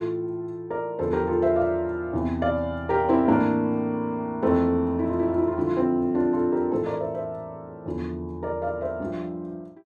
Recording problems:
none

